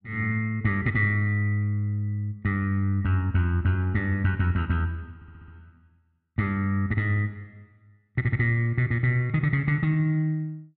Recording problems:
stutter; at 5 s

